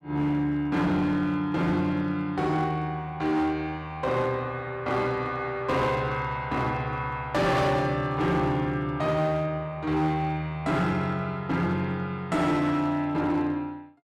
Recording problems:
distortion; hard clipping, signal-to-distortion ratio 11 dB

